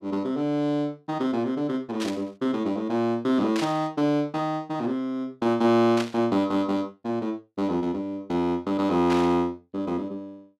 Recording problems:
static burst; 4 times, first at 2 s; peak -3 dB vs average level

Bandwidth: 14 kHz